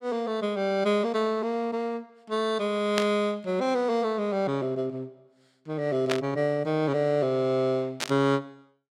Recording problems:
static burst; at 3 s, at 6 s and at 8 s; peak +3 dB vs average level

